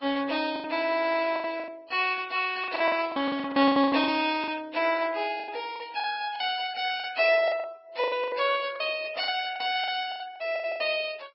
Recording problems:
lossy compression; MP2, then Vorbis, log-spectral distance 4 dB, nothing above 4.6 kHz
lost packets; 15% of the sound replaced, filled with the last packet

